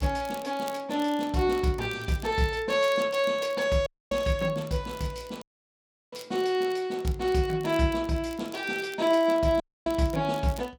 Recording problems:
crackling; vinyl, SNR 22 dB
dropout; at 4 s, at 5.5 s for 0.5 s and at 9.5 s

